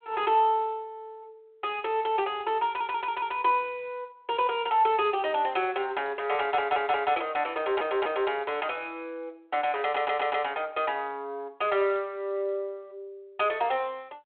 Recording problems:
phone line; 300 Hz to 3.5 kHz, G.726
stutter; 4 times, first at 2.5 s

